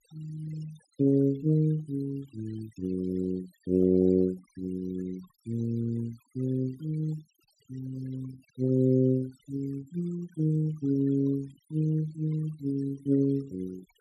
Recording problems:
noise reduction artefacts; signal-to-artefact ratio 25 dB

